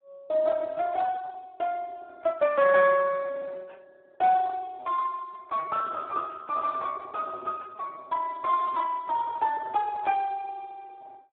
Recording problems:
telephone audio; 280 Hz to 2.2 kHz, Speex

